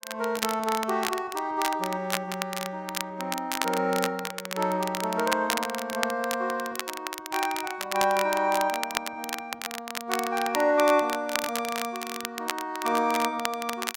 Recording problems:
crackling; vinyl, SNR 6 dB

